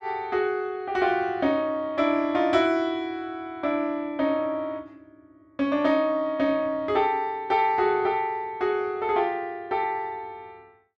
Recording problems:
none

